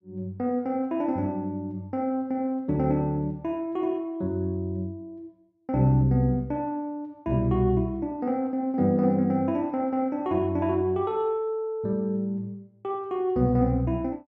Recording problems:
none

